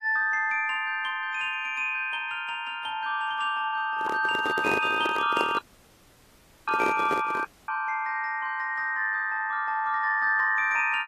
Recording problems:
codec artefacts; AAC, log-spectral distance 3 dB
microphone handling noise; from 4 to 7.5 s; peak 0 dB vs average level
dropout; at 5.5 s for 1 s and at 7.5 s

